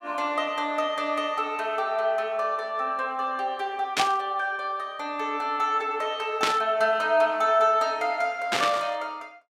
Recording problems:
burst of static; at 4 s, at 6.5 s and at 8.5 s; peak +5 dB vs average level

